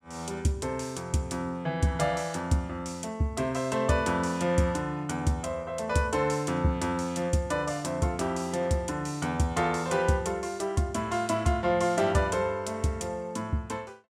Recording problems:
none

